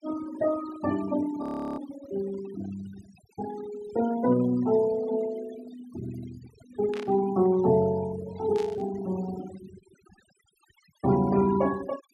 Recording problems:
noise reduction artefacts; signal-to-artefact ratio 16 dB
frozen audio; at 1.5 s
static burst; at 7 s and at 8.5 s; peak -11 dB vs average level

